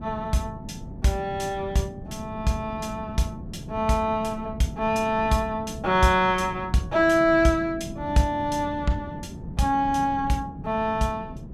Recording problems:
wind noise; below 230 Hz, SNR 13 dB

